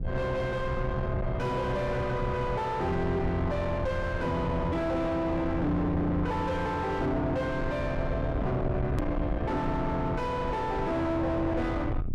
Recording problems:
distortion; soft clipping, signal-to-distortion ratio 5 dB
low-frequency rumble; below 230 Hz, SNR 4 dB
hard cut with a click; at 9 s

